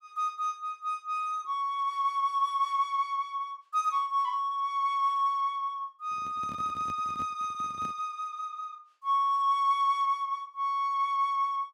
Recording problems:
microphone handling noise; from 6 to 8 s; peak -11 dB vs average level

